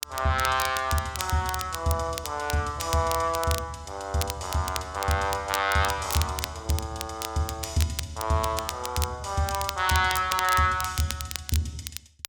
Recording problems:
crackling; vinyl, SNR 8 dB

